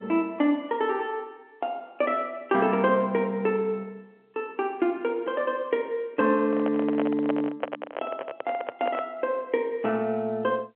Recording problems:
phone line; 190 Hz to 3.3 kHz, G.711
microphone handling noise; from 6.5 to 9 s; peak +2 dB vs average level

